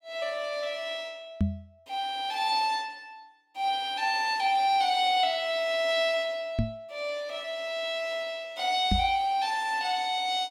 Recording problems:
knock on the microphone; at 1.5 s, at 6.5 s and at 9 s; peak +5 dB vs average level

